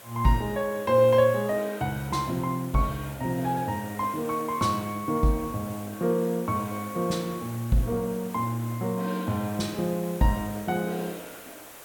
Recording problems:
hiss; SNR 17 dB

